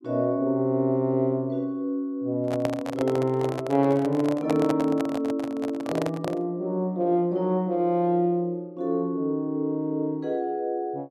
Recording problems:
handling noise; from 2.5 to 6.5 s; peak +1 dB vs average level

